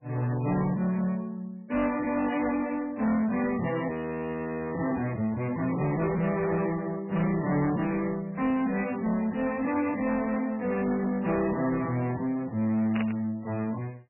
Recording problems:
lossy codec; MP3, log-spectral distance 3 dB, nothing above 2.6 kHz
distorted audio; soft clipping, signal-to-distortion ratio 11 dB
audio freezing; at 4 s for 1 s
burst of static; at 13 s; peak -3 dB vs average level

